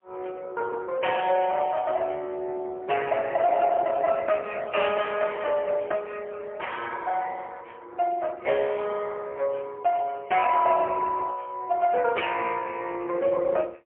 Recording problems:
phone line; 300 Hz to 3.2 kHz, AMR-NB, then MP3

